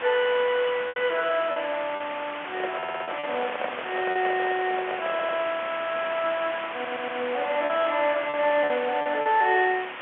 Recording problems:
phone line; 260 Hz to 3.3 kHz, G.711
background hiss; SNR 8 dB
lost packets; 5% of the sound replaced, filled with repeated pitch periods
microphone handling noise; from 2.5 to 5.5 s; peak -1 dB vs average level
stutter; at 3 s, at 5 s and at 6.5 s

